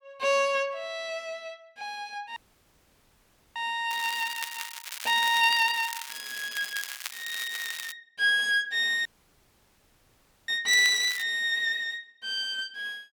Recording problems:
dropout; at 2.5 s for 1 s and at 9 s for 1.5 s
crackling; from 4 to 8 s and at 11 s; loose cable, SNR 11 dB

